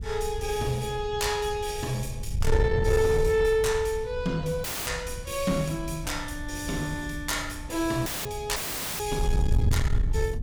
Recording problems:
distortion; soft clipping, signal-to-distortion ratio 10 dB
wind noise; below 100 Hz, SNR 4 dB
audio cutting out; at 4.5 s, at 8 s and at 8.5 s

